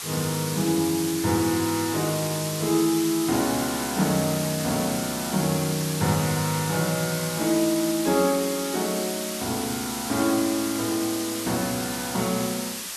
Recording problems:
hiss; slope +2 dB per octave, SNR 5 dB

